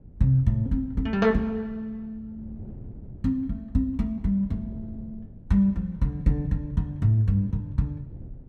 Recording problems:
wind noise; below 170 Hz, SNR 20 dB

